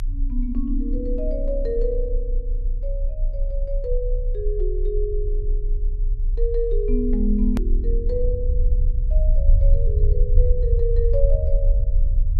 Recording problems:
rumble; below 46 Hz, strongest tone 32 Hz, SNR -4 dB
edit click; at 7.5 s

